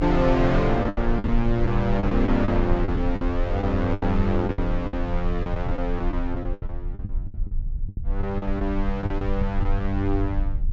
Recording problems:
treble cut off; nothing above 7.7 kHz
rumble; below 54 Hz, strongest tone 28 Hz, SNR 5 dB
lost packets; 12% of the sound replaced, filled with the last packet

